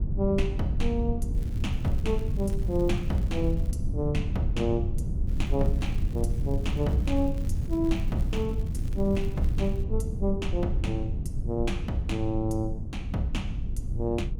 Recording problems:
low-frequency rumble; below 100 Hz, SNR 0 dB
crackle; from 1.5 to 3.5 s and from 5.5 to 10 s; loose cable, SNR 24 dB

